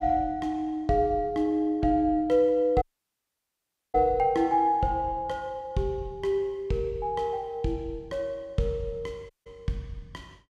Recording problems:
dropout; at 3 s for 1 s and at 9.5 s

